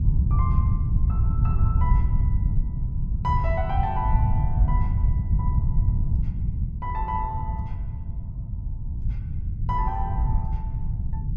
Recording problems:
low-frequency rumble; below 110 Hz, SNR -7 dB

